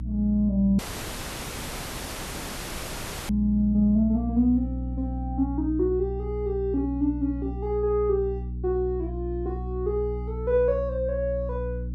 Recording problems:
hum; 60 Hz, harmonics up to 300 Hz, SNR 7 dB
audio cutting out; at 1 s for 2.5 s

